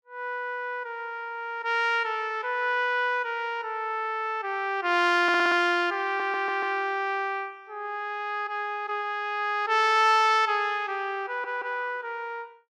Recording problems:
audio stuttering; at 5 s, at 6 s and at 11 s

